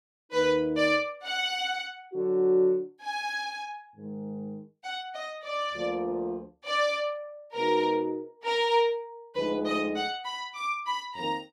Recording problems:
none

